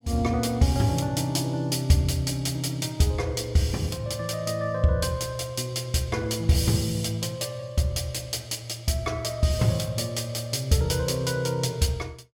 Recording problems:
none

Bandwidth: 16.5 kHz